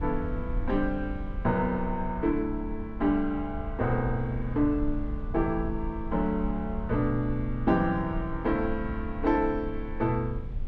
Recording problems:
rumble; below 66 Hz, SNR 9 dB

